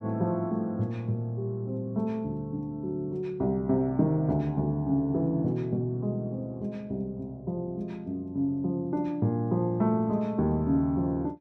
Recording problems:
none

